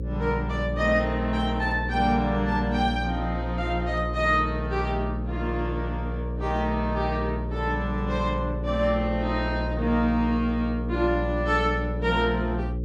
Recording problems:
electrical hum; 60 Hz, harmonics up to 540 Hz, SNR 4 dB

